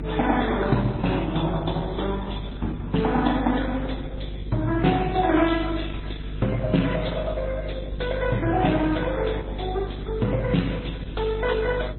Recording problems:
lossy codec; Opus, then MP3, log-spectral distance 6 dB, nothing above 4 kHz
hum; 50 Hz, harmonics up to 450 Hz, SNR 8 dB

